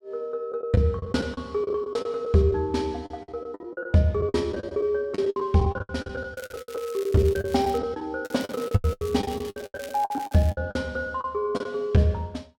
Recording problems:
lost packets; 17% of the sound replaced, filled with the last packet
crackle; from 6.5 to 8 s and from 8 to 11 s; loose cable, SNR 19 dB

